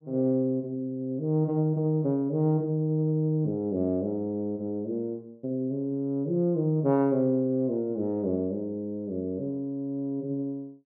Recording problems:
none

